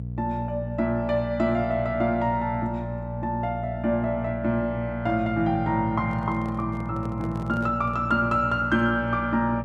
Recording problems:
electrical hum; 60 Hz, harmonics up to 480 Hz, SNR 8 dB
handling noise; from 6 to 8 s; peak -12 dB vs average level

